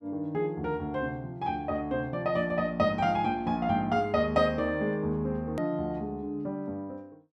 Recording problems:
hard cut with a click; at 5.5 s

